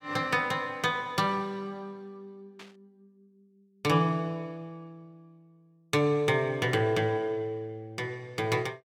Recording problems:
static burst; at 2.5 s; peak -14 dB vs average level

